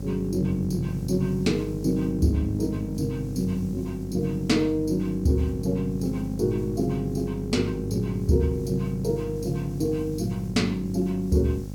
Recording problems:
hum; 50 Hz, harmonics up to 600 Hz, SNR 8 dB
hiss; slope +5 dB per octave, SNR 27 dB

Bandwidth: 17 kHz